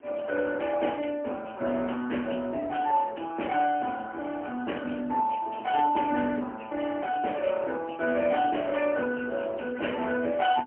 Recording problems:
telephone audio; 220 Hz to 3.2 kHz, AMR-NB, then MP3
wind noise; below 620 Hz, SNR 22 dB

